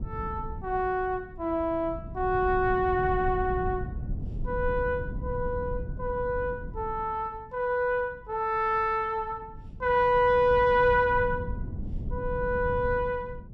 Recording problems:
wind noise; below 140 Hz, SNR 10 dB

